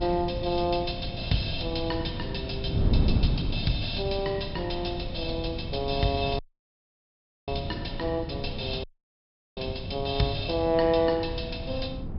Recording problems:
low-pass filter; nothing above 5.4 kHz
wind on the microphone; below 160 Hz, SNR 4 dB
dropout; at 6.5 s for 1 s and at 9 s for 0.5 s

